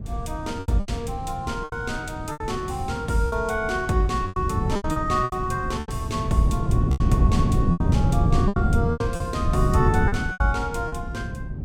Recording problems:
wind on the microphone; below 170 Hz, SNR -1 dB
packet loss; 11% of the sound replaced, filled with repeated pitch periods

